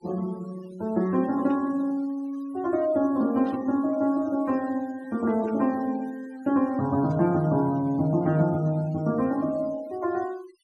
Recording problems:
noise reduction artefacts; signal-to-artefact ratio 24 dB
burst of static; 4 times, first at 1.5 s; peak -19 dB vs average level

